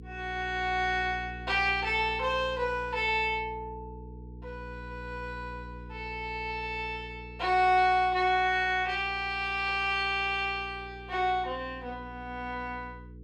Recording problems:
electrical hum; 60 Hz, harmonics up to 480 Hz, SNR 17 dB

